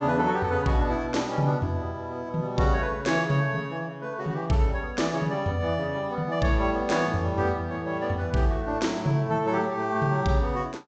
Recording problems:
treble cut off; nothing above 8 kHz

